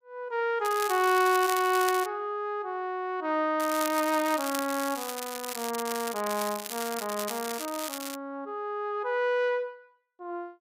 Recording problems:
crackling; from 0.5 to 2 s, from 3.5 to 6 s and from 6 to 8 s; loose cable, SNR 8 dB

